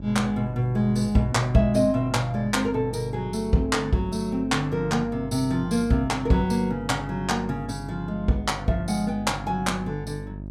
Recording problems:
electrical hum; 50 Hz, harmonics up to 650 Hz, SNR 12 dB

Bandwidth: 16 kHz